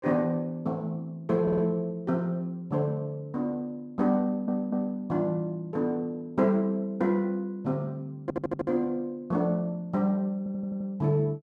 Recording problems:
audio stuttering; 4 times, first at 1.5 s

